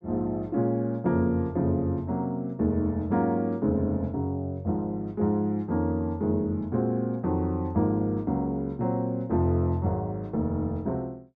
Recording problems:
none

